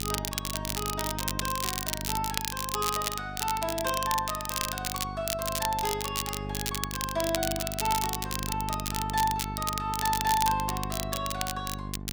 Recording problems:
electrical hum; 50 Hz, harmonics up to 800 Hz, SNR 7 dB
crackling; vinyl, SNR 1 dB

